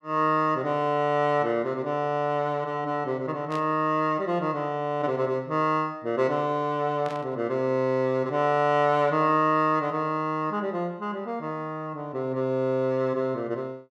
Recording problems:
static burst; at 3.5 s and at 7 s; peak -12 dB vs average level

